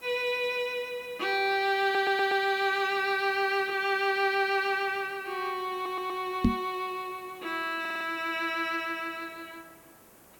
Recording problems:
hiss; slope -6 dB per octave, SNR 25 dB
stutter; at 2 s, at 5.5 s and at 8 s
microphone bump; at 6.5 s; peak +8 dB vs average level

